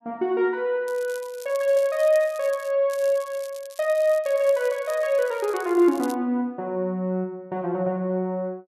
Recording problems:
crackle; from 1 to 2.5 s, from 3 to 4 s and from 4 to 6 s; loose cable, SNR 21 dB

